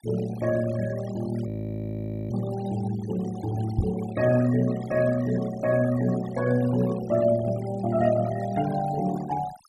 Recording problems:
denoising artefacts; signal-to-artefact ratio 16 dB
frozen audio; at 1.5 s for 1 s
microphone thump; at 4 s; peak +5 dB vs average level

